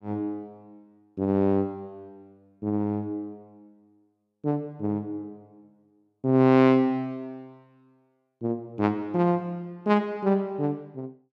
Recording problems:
none

